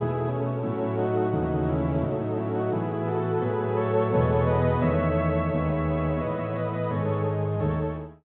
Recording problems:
treble missing; nothing above 4 kHz

